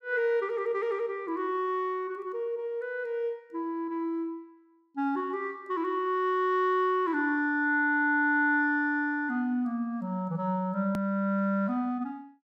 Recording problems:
hard cut with a click; at 11 s

